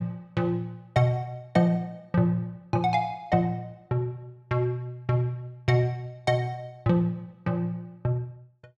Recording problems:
none

